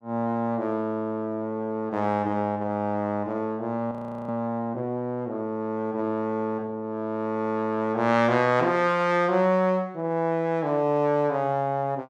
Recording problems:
audio freezing; at 4 s

